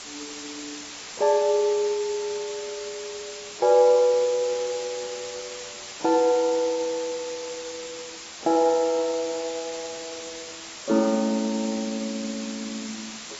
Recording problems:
lossy compression; AAC, log-spectral distance 17 dB, nothing above 7.6 kHz
hiss; slope +1 dB per octave, SNR 12 dB

